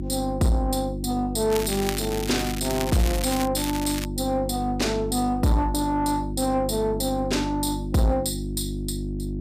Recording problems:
distortion; soft clipping, signal-to-distortion ratio 10 dB
electrical hum; 50 Hz, harmonics up to 350 Hz, SNR 6 dB
crackle; from 1.5 to 3.5 s and at 3.5 s; loose cable, SNR 8 dB

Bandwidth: 15 kHz